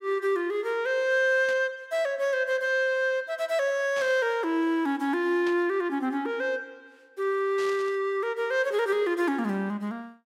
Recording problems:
static burst; 4 times, first at 1.5 s; peak -10 dB vs average level

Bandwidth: 16.5 kHz